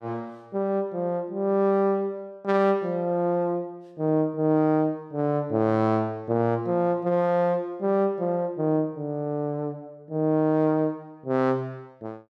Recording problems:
none

